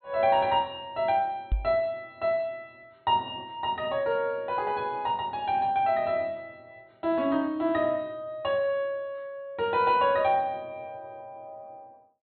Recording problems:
treble cut off; nothing above 4.3 kHz
microphone bump; at 1.5 s; peak +3 dB vs average level

